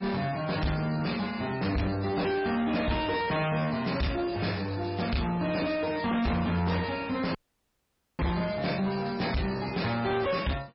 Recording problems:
codec artefacts; MP3, log-spectral distance 6 dB, nothing above 5.3 kHz
distorted audio; soft clipping, signal-to-distortion ratio 7 dB
audio cutting out; at 7.5 s for 1 s

